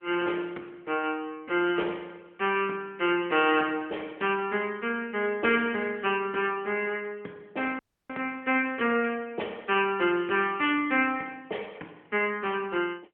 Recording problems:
phone line; 220 Hz to 3.2 kHz, AMR-NB
dropout; at 8 s

